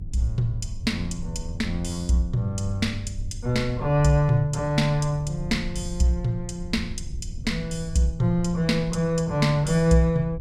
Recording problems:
low-frequency rumble; below 86 Hz, SNR 13 dB

